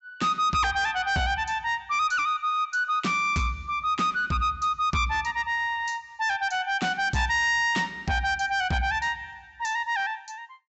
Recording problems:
treble cut off; nothing above 7.6 kHz
distorted audio; soft clipping, signal-to-distortion ratio 10 dB

